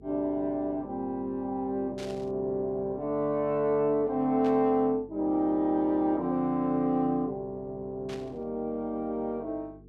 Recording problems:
hum; 50 Hz, harmonics up to 450 Hz, SNR 23 dB
static burst; at 2 s, at 4.5 s and at 8 s; peak -11 dB vs average level

